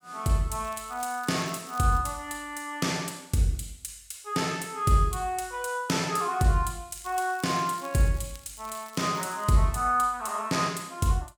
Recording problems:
crackling; from 0.5 to 2 s and from 7 to 9.5 s; loose cable, SNR 22 dB

